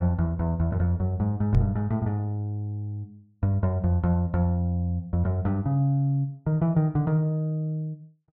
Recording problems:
microphone thump; at 1.5 s; peak +7 dB vs average level

